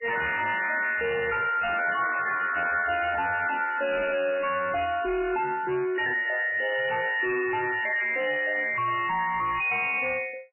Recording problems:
codec artefacts; MP3, log-spectral distance 8 dB, nothing above 2.5 kHz
distortion; hard clipping, uneven, signal-to-distortion ratio 5 dB
burst of static; at 4 s and at 7.5 s; peak -11 dB vs average level

